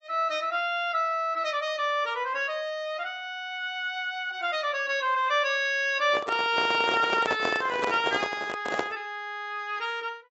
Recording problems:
codec artefacts; AAC, log-spectral distance 2 dB, nothing above 6.2 kHz
microphone handling noise; from 6 to 9 s; peak +3 dB vs average level

